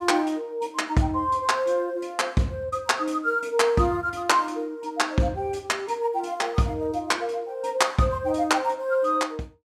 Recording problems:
none

